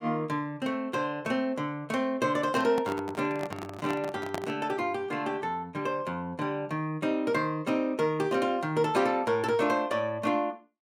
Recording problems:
microphone handling noise; from 2.5 to 4.5 s; peak -1 dB vs average level

